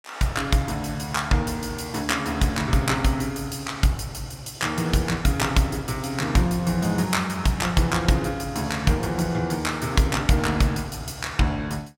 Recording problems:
none

